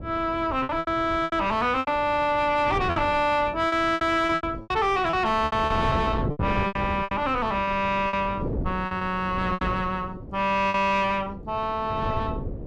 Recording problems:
distortion; soft clipping, signal-to-distortion ratio 10 dB
wind noise; below 360 Hz, SNR 10 dB
packet loss; 10% of the sound replaced, filled with repeated pitch periods

